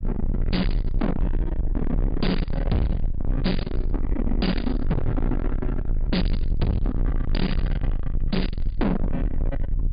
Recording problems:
treble missing; nothing above 4.9 kHz
distorted audio; soft clipping, signal-to-distortion ratio 6 dB
low-frequency rumble; below 150 Hz, SNR 1 dB

